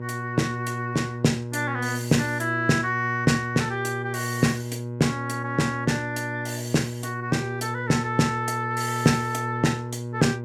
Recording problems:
electrical hum; 60 Hz, harmonics up to 1.1 kHz, SNR 7 dB

